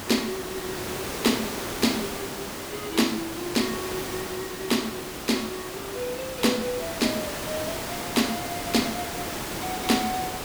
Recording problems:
hiss; slope -4 dB per octave, SNR 4 dB

